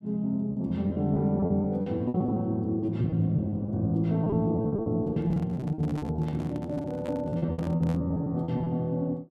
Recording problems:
packet loss; 16% of the sound replaced, filled with repeated pitch periods
handling noise; from 5 to 8 s; peak -10 dB vs average level

